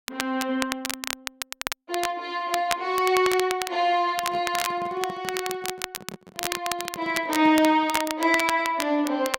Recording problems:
crackling; vinyl, SNR 8 dB
microphone handling noise; from 4 to 8 s; peak -10 dB vs average level

